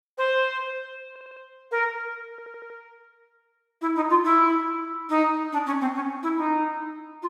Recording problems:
stutter; at 1 s and at 2.5 s

